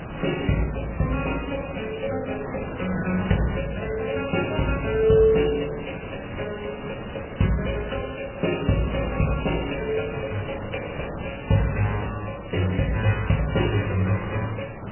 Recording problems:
lossy compression; MP3, log-spectral distance 13 dB, nothing above 2.9 kHz
background hiss; SNR 10 dB

